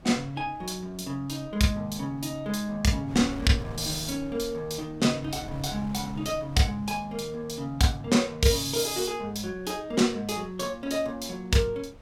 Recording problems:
wind on the microphone; below 310 Hz, SNR 19 dB

